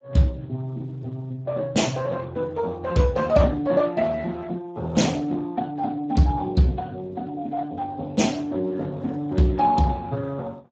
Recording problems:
codec artefacts; Speex, log-spectral distance 3 dB, nothing above 7.3 kHz

